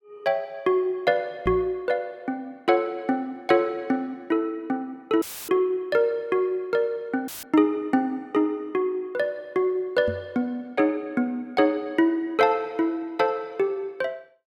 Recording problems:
knock on the microphone; at 1.5 s and at 10 s; peak -2 dB vs average level
dropout; at 5 s and at 7.5 s; filled with static

